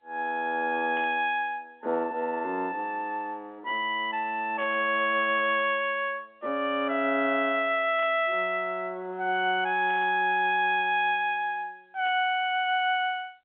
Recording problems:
phone line; 240 Hz to 3.5 kHz, G.711
burst of static; 5 times, first at 1 s; peak -14 dB vs average level

